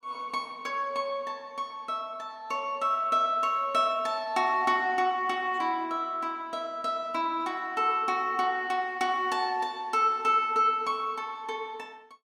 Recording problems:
none

